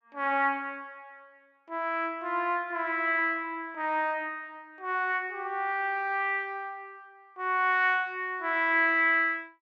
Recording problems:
none

